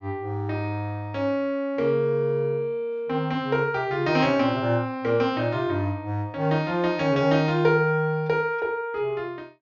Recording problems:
treble cut off; nothing above 6.9 kHz

